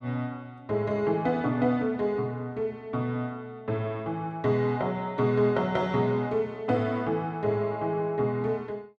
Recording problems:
none

